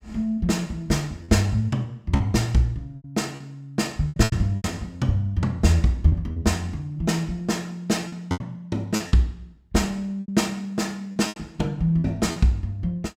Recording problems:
lost packets; 8% of the sound replaced, filled with repeated pitch periods

